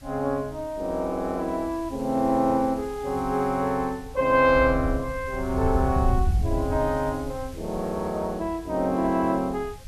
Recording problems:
hiss; slope 0 dB per octave, SNR 24 dB
wind noise; below 86 Hz, SNR 6 dB

